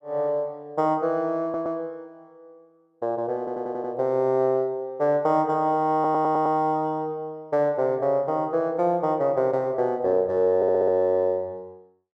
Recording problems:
audio stuttering; 4 times, first at 1.5 s

